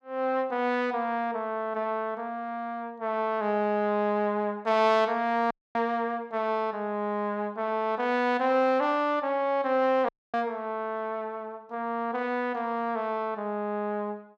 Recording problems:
audio cutting out; at 5.5 s and at 10 s

